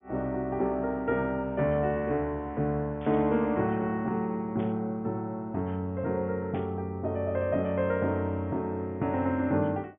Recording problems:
treble missing; nothing above 3.5 kHz
static burst; at 3 s, at 4.5 s and at 6.5 s; peak -14 dB vs average level

